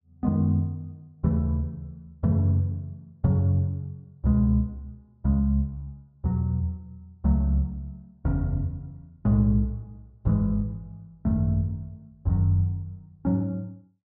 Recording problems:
treble cut off; nothing above 5.2 kHz

